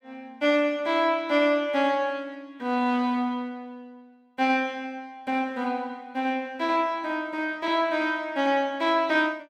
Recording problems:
none

